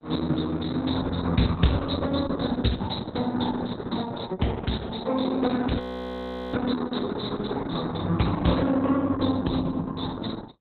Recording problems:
lossy codec; Opus, log-spectral distance 7 dB, nothing above 4.1 kHz
frozen audio; at 6 s for 0.5 s

